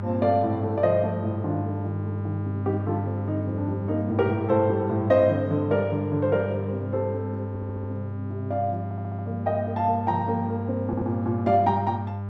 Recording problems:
hum; 50 Hz, harmonics up to 1.4 kHz, SNR 6 dB
audio stuttering; at 7.5 s, at 9 s and at 11 s

